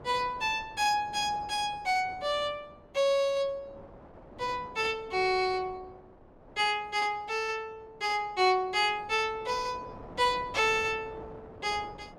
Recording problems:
wind on the microphone; below 740 Hz, SNR 21 dB

